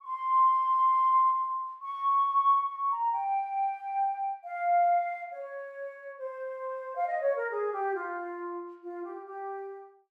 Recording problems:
none

